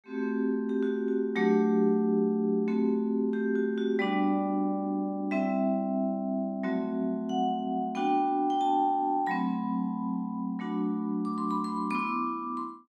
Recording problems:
none

